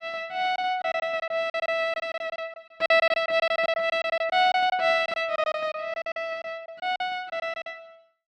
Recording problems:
lost packets; 15% of the sound replaced, filled with silence

